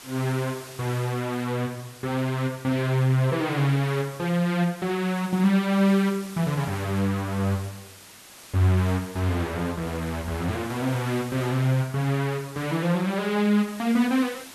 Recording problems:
background hiss; slope -1 dB per octave, SNR 19 dB

